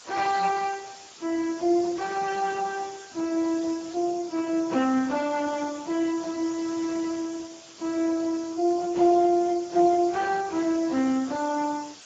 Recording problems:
lossy compression; Speex, then AAC, log-spectral distance 8 dB
background hiss; SNR 18 dB

